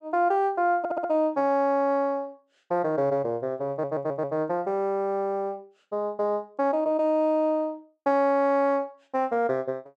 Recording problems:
audio stuttering; at 1 s and at 3.5 s

